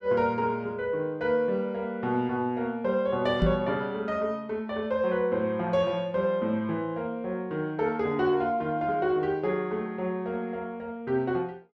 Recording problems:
knock on the microphone; at 3.5 s; peak +6 dB vs average level

